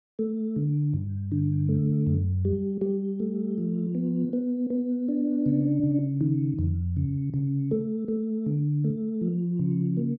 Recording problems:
none

